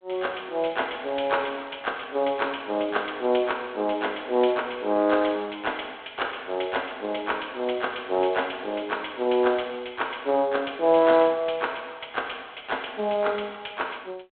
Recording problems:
telephone audio; 220 Hz to 3.5 kHz, G.726

